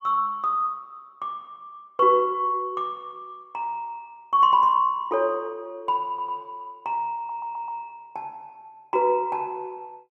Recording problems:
audio stuttering; at 6 s and at 7 s

